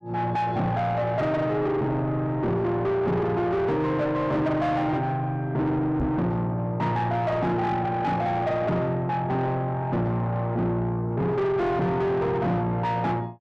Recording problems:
distortion; soft clipping, signal-to-distortion ratio 7 dB
microphone bump; at 6 s; peak +4 dB vs average level

